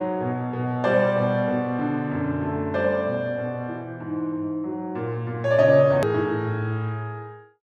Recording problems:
click at an edit; at 6 s

